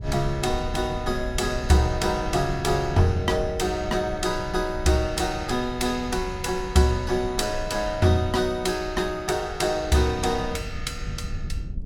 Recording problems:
rumble; below 100 Hz, SNR 11 dB

